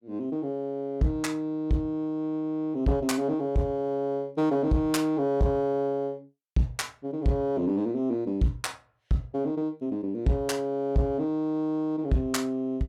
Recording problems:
distortion; soft clipping, signal-to-distortion ratio 11 dB

